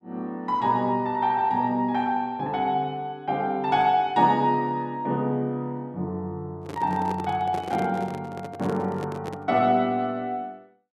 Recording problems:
microphone handling noise; from 6.5 to 9.5 s; peak -5 dB vs average level

